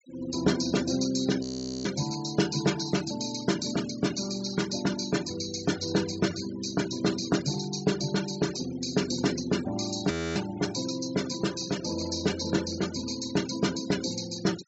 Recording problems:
treble missing; nothing above 7.8 kHz
denoising artefacts; signal-to-artefact ratio 13 dB
audio freezing; at 1.5 s and at 10 s

